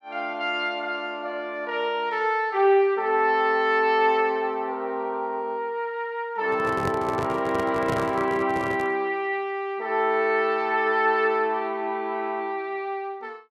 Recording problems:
handling noise; from 6.5 to 9 s; peak -2 dB vs average level

